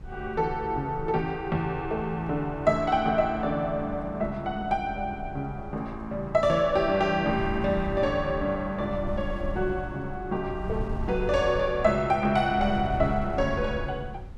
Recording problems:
wind on the microphone; below 98 Hz, SNR 12 dB

